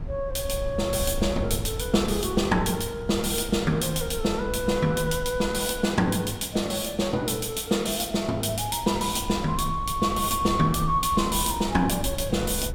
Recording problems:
low-frequency rumble; below 98 Hz, SNR 12 dB

